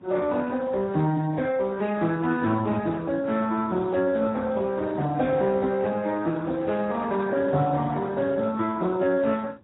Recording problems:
codec artefacts; Speex, then AAC, log-spectral distance 3 dB, nothing above 3.8 kHz
wind noise; below 460 Hz, SNR 20 dB

